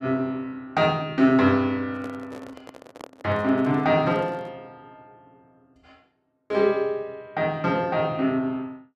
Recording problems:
handling noise; from 2 to 4.5 s; peak -12 dB vs average level

